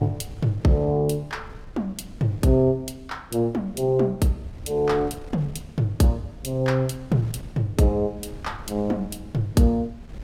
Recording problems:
wind noise; below 140 Hz, SNR 19 dB

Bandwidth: 16 kHz